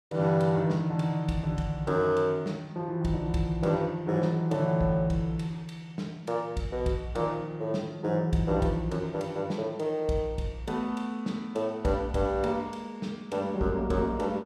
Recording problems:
none

